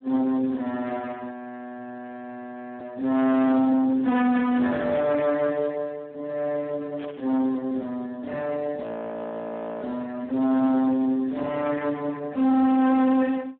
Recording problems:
telephone audio; 170 Hz to 2.6 kHz, Speex
distorted audio; hard clipping, uneven, signal-to-distortion ratio 7 dB
audio freezing; at 1.5 s for 1.5 s and at 9 s for 1 s
burst of static; at 7 s; peak -12 dB vs average level

